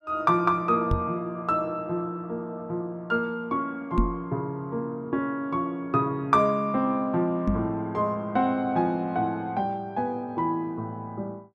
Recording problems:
microphone bump; at 1 s, at 4 s and at 7.5 s; peak +7 dB vs average level

